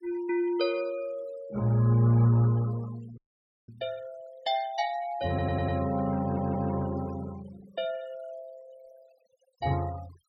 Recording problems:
denoising artefacts; signal-to-artefact ratio 22 dB
audio freezing; at 3 s for 0.5 s
stutter; at 5.5 s and at 6 s

